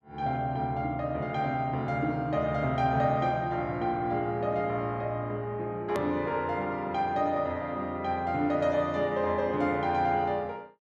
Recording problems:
hard cut with a click; at 6 s

